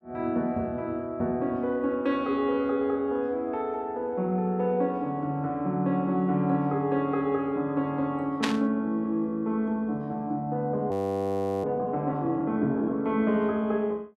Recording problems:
burst of static; at 8.5 s; peak +4 dB vs average level
frozen audio; at 11 s for 0.5 s

